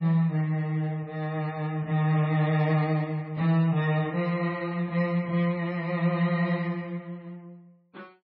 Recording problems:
lossy compression; MP3, log-spectral distance 2 dB, nothing above 16.6 kHz

